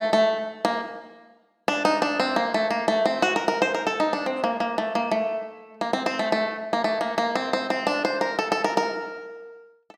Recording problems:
none

